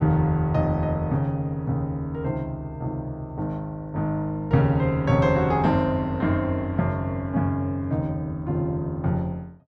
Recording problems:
none

